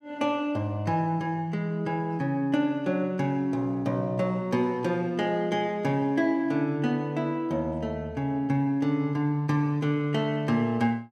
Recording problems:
none

